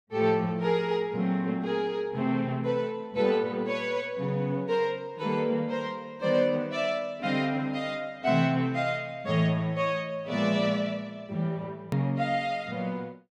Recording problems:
edit click; at 12 s

